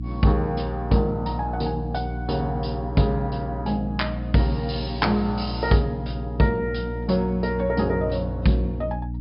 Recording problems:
treble cut off; nothing above 5.5 kHz
hum; 60 Hz, harmonics up to 300 Hz, SNR 7 dB

